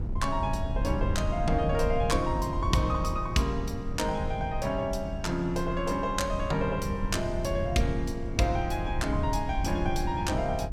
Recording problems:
wind noise; below 120 Hz, SNR 4 dB

